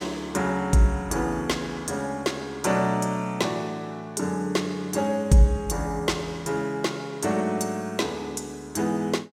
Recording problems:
none

